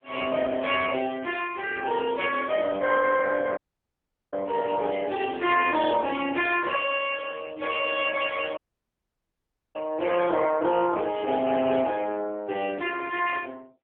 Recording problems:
phone line; 220 Hz to 3.4 kHz, AMR-NB
audio cutting out; at 3.5 s for 1 s and at 8.5 s for 1 s

